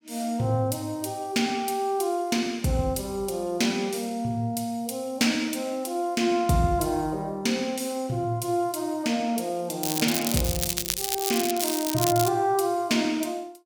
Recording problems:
crackle; from 10 to 12 s; loose cable, SNR 2 dB

